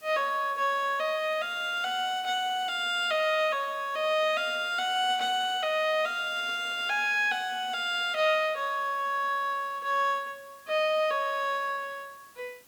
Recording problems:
hiss; slope -1 dB per octave, SNR 27 dB

